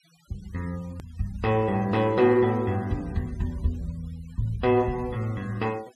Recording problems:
noise reduction artefacts; signal-to-artefact ratio 26 dB
edit click; at 1 s

